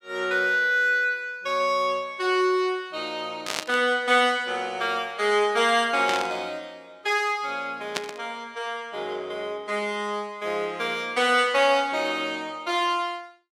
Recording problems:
static burst; at 3.5 s, at 6 s and at 8 s; peak +1 dB vs average level

